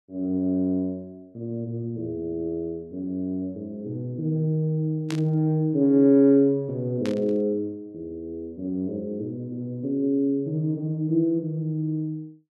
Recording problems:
burst of static; at 5 s and at 7 s; peak -6 dB vs average level

